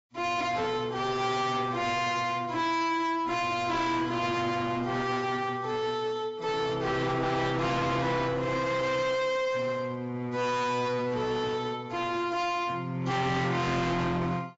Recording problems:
lossy codec; AAC, log-spectral distance 3 dB, nothing above 7.6 kHz
distorted audio; hard clipping, signal-to-distortion ratio 7 dB

